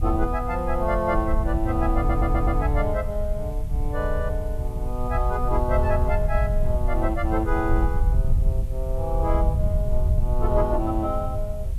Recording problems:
background hiss; slope -2 dB per octave, SNR 25 dB
wind on the microphone; below 72 Hz, SNR -1 dB
audio stuttering; at 2 s

